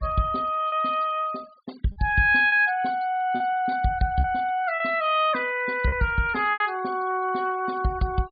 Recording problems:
treble cut off; nothing above 4.7 kHz
denoising artefacts; signal-to-artefact ratio 24 dB
packet loss; 4% of the sound replaced, filled with repeated pitch periods

